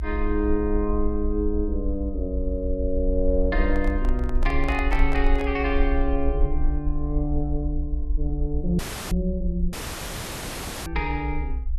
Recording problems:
low-frequency rumble; below 56 Hz, SNR 1 dB
microphone handling noise; from 3.5 to 5.5 s; peak -2 dB vs average level
dropout; at 9 s and at 9.5 s for 1 s

